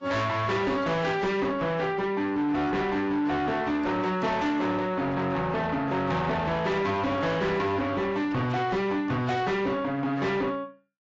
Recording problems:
lossy codec; AAC, log-spectral distance 2 dB, nothing above 7.3 kHz
distorted audio; soft clipping, signal-to-distortion ratio 8 dB

